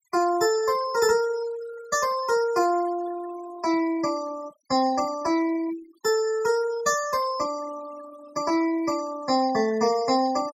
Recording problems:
denoising artefacts; signal-to-artefact ratio 16 dB

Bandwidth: 16.5 kHz